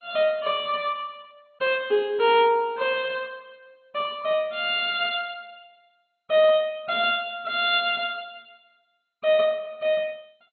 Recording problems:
lossy codec; MP2, log-spectral distance 3 dB, nothing above 3.5 kHz

